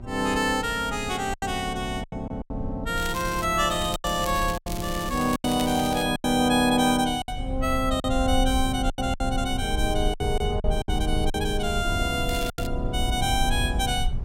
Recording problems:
electrical hum; 60 Hz, harmonics up to 960 Hz, SNR 19 dB
low-frequency rumble; below 76 Hz, SNR 8 dB
lost packets; 8% of the sound replaced, filled with silence
crackle; at 3 s, from 3.5 to 6 s and at 12 s; loose cable, SNR 12 dB

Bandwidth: 16 kHz